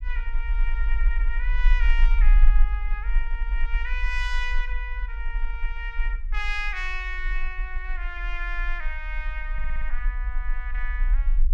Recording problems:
rumble; below 40 Hz, strongest tone 24 Hz, SNR -5 dB
stutter; at 9.5 s

